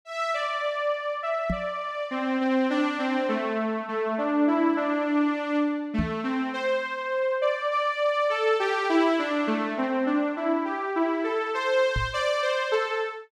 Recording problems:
microphone bump; at 1.5 s, at 6 s and at 12 s; peak +1 dB vs average level

